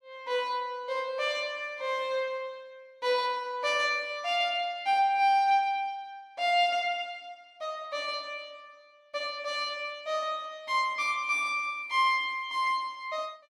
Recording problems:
none

